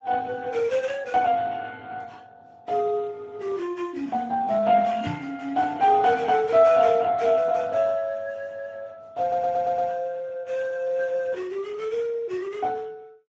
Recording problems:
codec artefacts; Speex, log-spectral distance 3 dB
knock on the microphone; at 5 s; peak -5 dB vs average level
stutter; at 9 s

